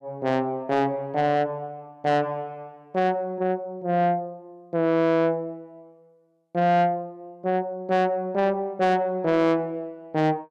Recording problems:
distortion; soft clipping, signal-to-distortion ratio 7 dB

